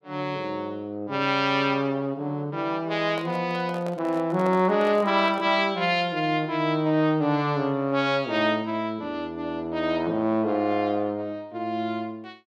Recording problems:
handling noise; from 3 to 5.5 s; peak -7 dB vs average level

